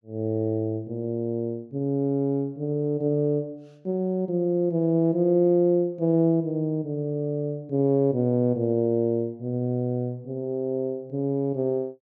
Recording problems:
none

